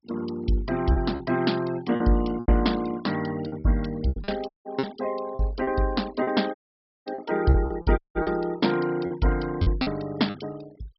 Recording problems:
treble missing; nothing above 5.3 kHz
denoising artefacts; signal-to-artefact ratio 19 dB
packet loss; 9% of the sound replaced, filled with repeated pitch periods
audio cutting out; at 4.5 s, at 6.5 s for 0.5 s and at 8 s

